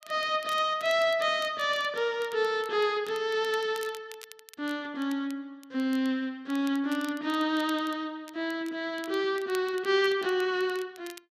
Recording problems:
crackle; vinyl, SNR 21 dB

